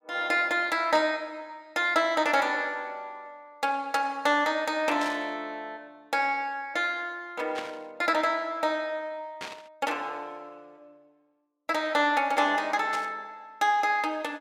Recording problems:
static burst; 5 times, first at 1 s; peak -5 dB vs average level

